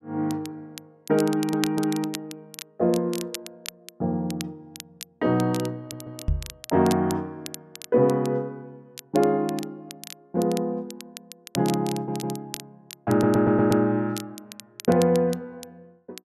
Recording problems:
crackling; vinyl, SNR 16 dB
stutter; 4 times, first at 1.5 s
knock on the microphone; at 6.5 s; peak +3 dB vs average level

